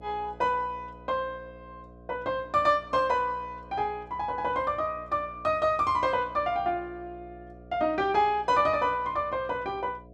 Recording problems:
hum; 60 Hz, harmonics up to 720 Hz, SNR 22 dB

